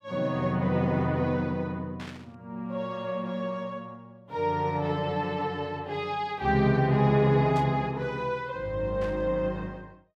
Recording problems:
static burst; at 2 s, at 7.5 s and at 9 s; peak -11 dB vs average level

